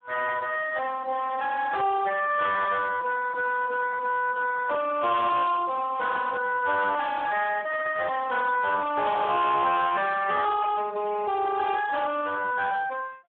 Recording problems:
phone line; 340 Hz to 3.9 kHz, Speex
distortion; soft clipping, signal-to-distortion ratio 7 dB

